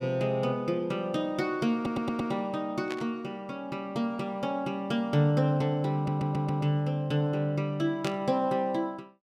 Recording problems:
stutter; at 2 s and at 6 s
burst of static; at 3 s and at 8 s; peak -5 dB vs average level

